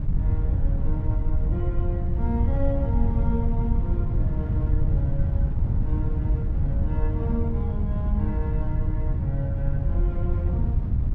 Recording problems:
rumble; below 76 Hz, SNR 7 dB
wind noise; below 100 Hz, SNR -8 dB

